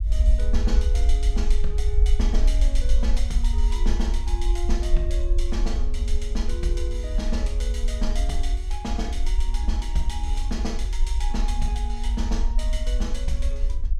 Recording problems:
low-frequency rumble; below 52 Hz, SNR -7 dB

